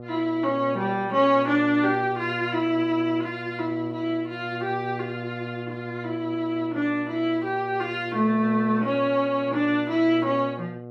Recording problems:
hum; 60 Hz, harmonics up to 840 Hz, SNR 11 dB

